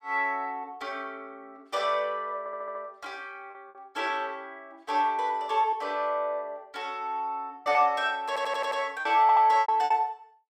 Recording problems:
packet loss; 4% of the sound replaced, filled with repeated pitch periods
stutter; at 2.5 s, at 8.5 s and at 9 s

